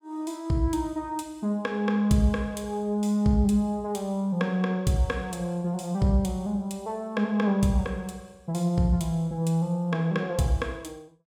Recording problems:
none

